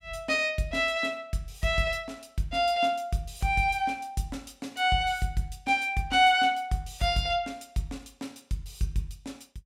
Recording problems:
none

